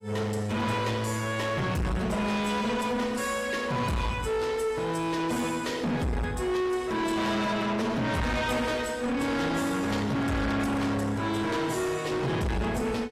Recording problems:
lossy compression; AAC, log-spectral distance 3 dB
distorted audio; soft clipping, signal-to-distortion ratio 5 dB

